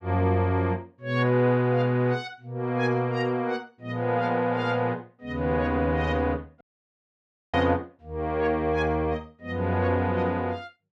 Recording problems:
dropout; at 6.5 s for 1 s

